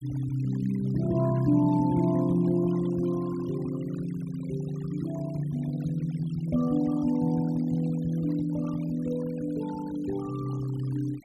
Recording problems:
noise reduction artefacts; signal-to-artefact ratio 21 dB

